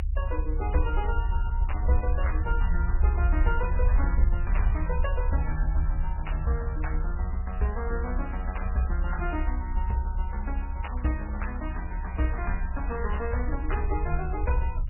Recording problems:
codec artefacts; MP3, log-spectral distance 2 dB, nothing above 2.6 kHz
low-frequency rumble; below 66 Hz, SNR -3 dB

